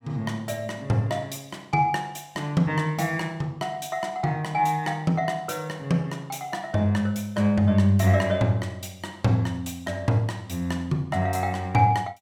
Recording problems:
none

